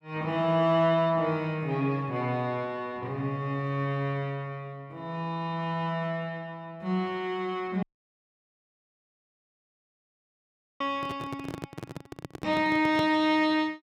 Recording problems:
dropout; at 8 s for 3 s
microphone handling noise; from 11 to 13 s; peak -1 dB vs average level

